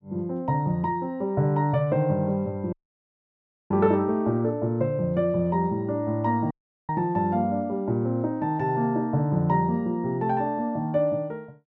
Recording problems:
dropout; at 2.5 s for 1 s and at 6.5 s

